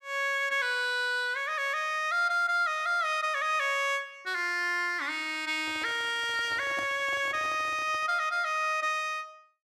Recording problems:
handling noise; from 5.5 to 8 s; peak -9 dB vs average level

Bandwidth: 14.5 kHz